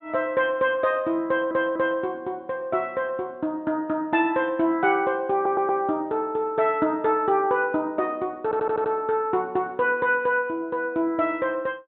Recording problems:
treble missing; nothing above 4 kHz
audio stuttering; at 1.5 s, at 5.5 s and at 8.5 s

